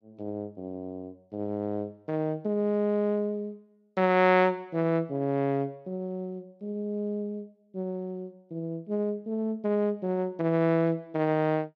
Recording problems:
none

